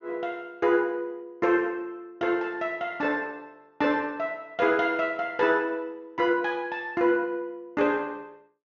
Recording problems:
treble cut off; nothing above 6.8 kHz

